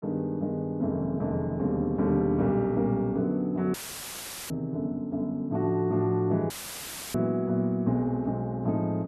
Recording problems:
dropout; at 3.5 s for 1 s and at 6.5 s for 0.5 s; filled with static

